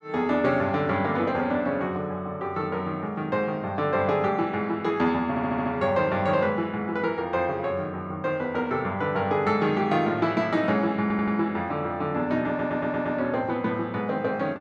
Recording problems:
stutter; at 5.5 s, at 11 s and at 12 s

